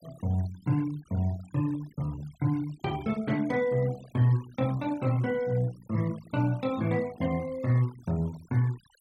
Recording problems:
noise reduction artefacts; signal-to-artefact ratio 22 dB

